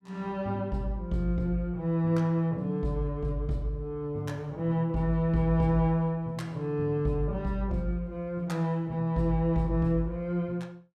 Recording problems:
none

